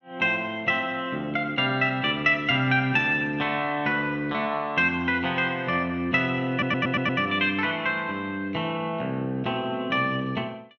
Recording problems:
audio stuttering; at 6.5 s

